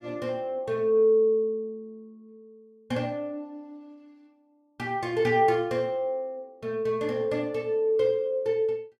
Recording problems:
none

